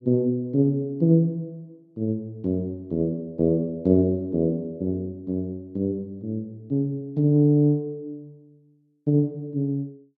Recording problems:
none

